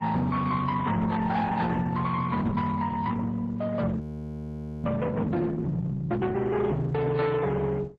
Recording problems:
lossy codec; MP3, then Opus, log-spectral distance 2 dB, nothing above 13.1 kHz
distorted audio; hard clipping, uneven, signal-to-distortion ratio 12 dB
microphone thump; at 2.5 s; peak +2 dB vs average level
audio freezing; at 4 s for 1 s

